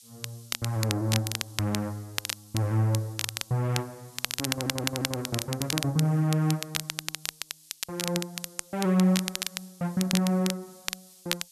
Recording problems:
background hiss; SNR 23 dB
crackling; vinyl, SNR 5 dB
stutter; at 4.5 s

